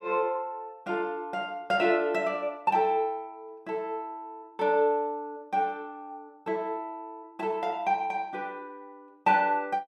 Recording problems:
none

